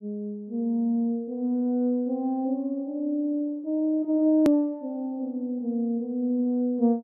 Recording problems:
edit click; at 4.5 s

